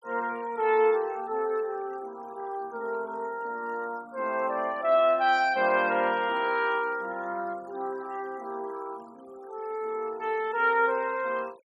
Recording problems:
noise reduction artefacts; signal-to-artefact ratio 24 dB

